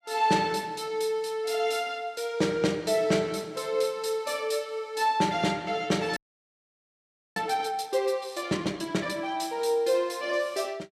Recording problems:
audio freezing; at 6 s for 1 s

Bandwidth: 15 kHz